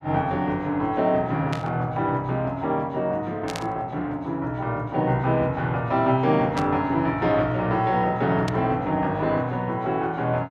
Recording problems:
static burst; 4 times, first at 1.5 s; peak -5 dB vs average level

